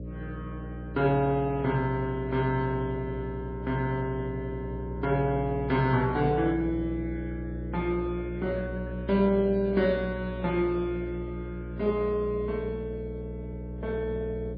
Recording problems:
codec artefacts; MP2, then MP3, log-spectral distance 2 dB, nothing above 4.1 kHz
hum; 60 Hz, harmonics up to 600 Hz, SNR 8 dB

